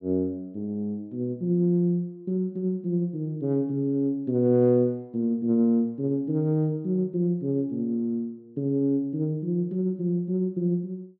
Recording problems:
none

